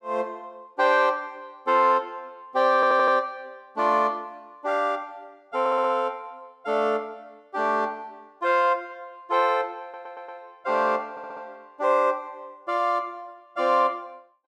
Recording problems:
audio stuttering; 4 times, first at 3 s

